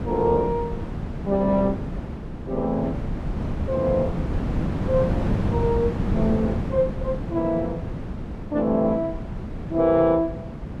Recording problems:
wind on the microphone; below 260 Hz, SNR 5 dB

